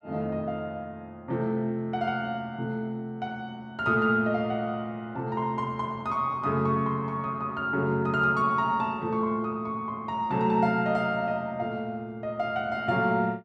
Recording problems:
none

